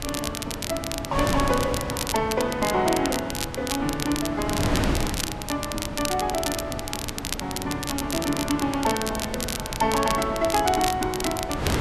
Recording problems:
wind noise; below 720 Hz, SNR 6 dB
crackle; vinyl, SNR 5 dB

